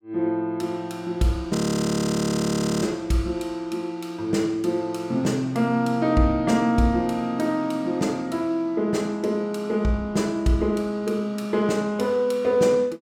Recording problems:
audio freezing; at 1.5 s for 1.5 s

